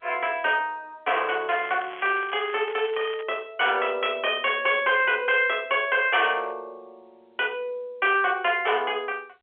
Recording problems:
telephone audio; 300 Hz to 3.4 kHz, G.711
distortion; hard clipping, signal-to-distortion ratio 12 dB
crackling; from 1.5 to 3 s; loose cable, SNR 17 dB

